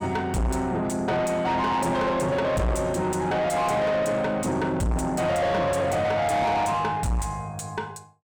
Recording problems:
distorted audio; soft clipping, signal-to-distortion ratio 7 dB

